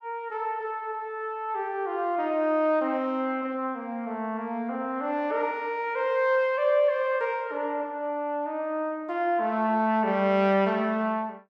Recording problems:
none

